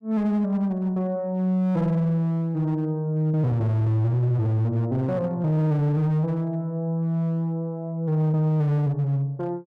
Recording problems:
distortion; hard clipping, uneven, signal-to-distortion ratio 10 dB

